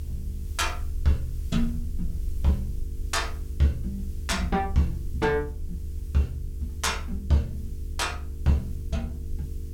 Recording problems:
hum; 50 Hz, harmonics up to 450 Hz, SNR 18 dB
background hiss; slope +2 dB per octave, SNR 26 dB
rumble; below 74 Hz, SNR 6 dB

